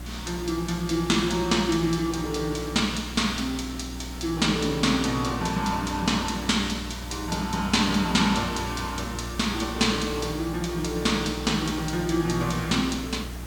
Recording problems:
hum; 60 Hz, harmonics up to 360 Hz, SNR 12 dB
background hiss; slope -4 dB per octave, SNR 16 dB

